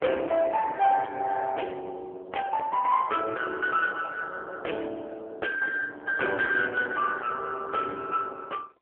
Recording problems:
phone line; 340 Hz to 3.3 kHz, AMR-NB
distorted audio; soft clipping, signal-to-distortion ratio 10 dB

